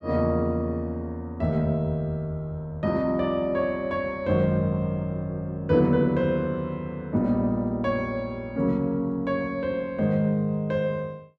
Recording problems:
none

